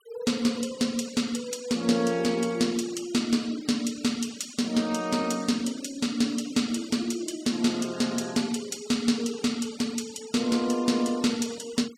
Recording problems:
noise reduction artefacts; signal-to-artefact ratio 19 dB

